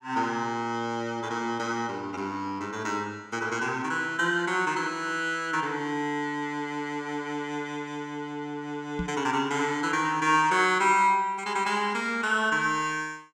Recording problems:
knock on the microphone; at 9 s; peak -1 dB vs average level

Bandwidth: 16.5 kHz